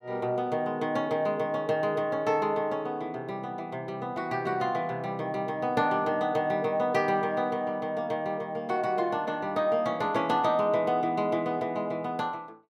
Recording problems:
none

